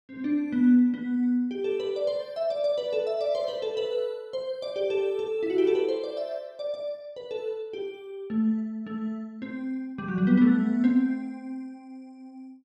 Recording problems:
none

